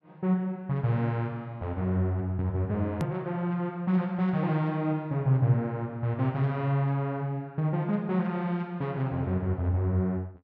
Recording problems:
hard cut with a click; at 3 s

